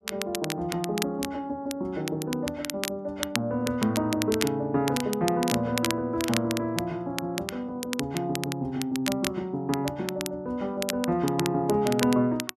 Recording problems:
crackle; vinyl, SNR 7 dB

